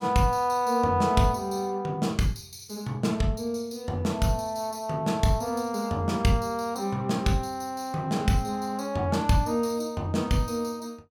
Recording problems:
none

